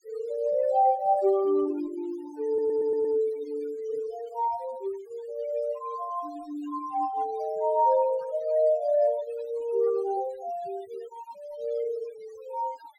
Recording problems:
noise reduction artefacts; signal-to-artefact ratio 23 dB
stutter; at 2.5 s

